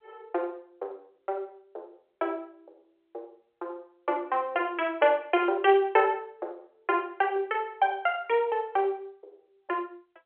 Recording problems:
phone line; 340 Hz to 3.4 kHz, G.711

